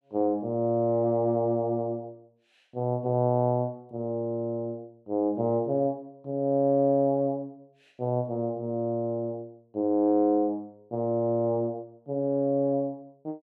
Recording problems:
none

